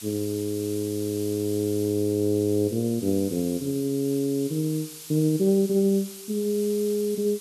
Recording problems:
background hiss; SNR 14 dB

